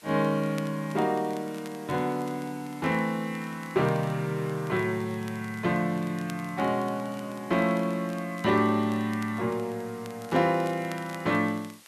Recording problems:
background hiss; slope 0 dB per octave, SNR 24 dB
crackle; vinyl, SNR 24 dB

